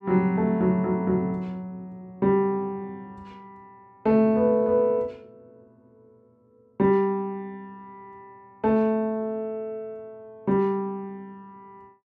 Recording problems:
none

